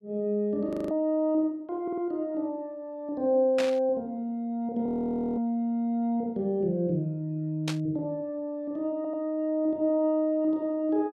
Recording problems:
frozen audio; at 0.5 s and at 5 s for 0.5 s
stutter; at 2 s and at 9 s
static burst; at 3.5 s and at 7.5 s; peak -1 dB vs average level

